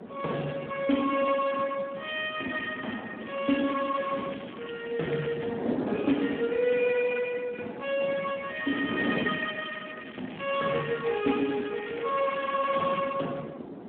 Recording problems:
phone line; 190 Hz to 3.3 kHz, Speex
wind on the microphone; below 510 Hz, SNR 9 dB
crackle; from 3 to 5.5 s and from 8.5 to 13 s; loose cable, SNR 16 dB

